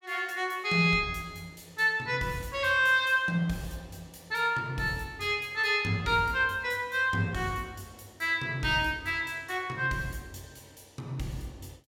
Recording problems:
none

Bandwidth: 16.5 kHz